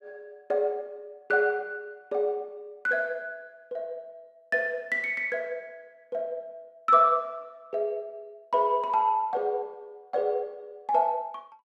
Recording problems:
none

